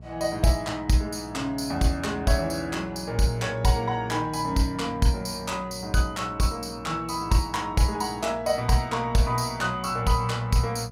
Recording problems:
electrical hum; 60 Hz, harmonics up to 660 Hz, SNR 19 dB

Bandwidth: 16 kHz